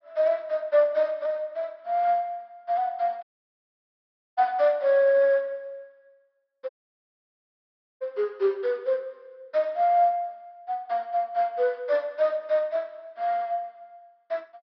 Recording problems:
treble missing; nothing above 5.5 kHz
audio cutting out; at 3 s for 1 s and at 6.5 s for 1.5 s

